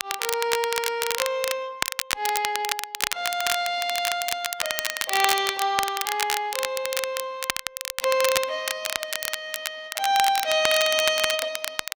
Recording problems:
codec artefacts; Opus, log-spectral distance 2 dB
crackling; vinyl, SNR 2 dB

